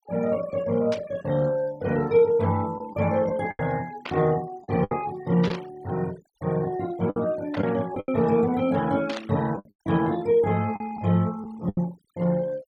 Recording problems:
noise reduction artefacts; signal-to-artefact ratio 22 dB
packet loss; 5% of the sound replaced, filled with the last packet
static burst; 5 times, first at 1 s; peak -5 dB vs average level

